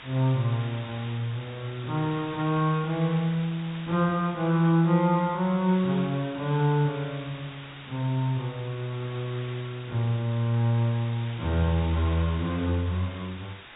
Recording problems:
treble cut off; nothing above 4 kHz
background hiss; SNR 16 dB

